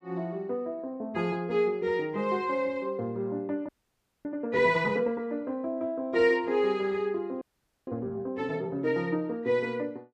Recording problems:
audio freezing; at 3.5 s for 0.5 s and at 7.5 s

